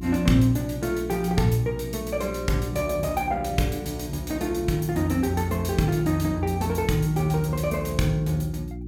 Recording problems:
electrical hum; 60 Hz, harmonics up to 360 Hz, SNR 11 dB

